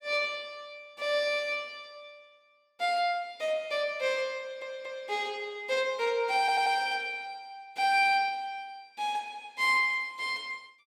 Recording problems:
audio stuttering; at 4.5 s and at 6.5 s

